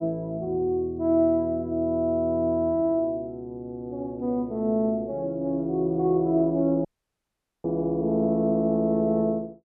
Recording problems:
audio cutting out; at 7 s for 1 s

